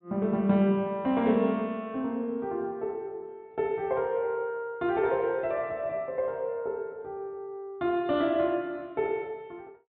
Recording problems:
treble missing; nothing above 4 kHz

